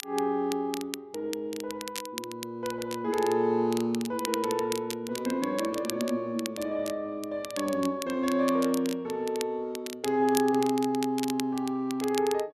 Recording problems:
crackling; vinyl, SNR 11 dB

